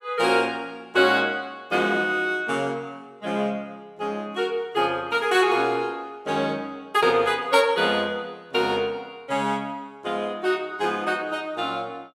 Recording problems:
none

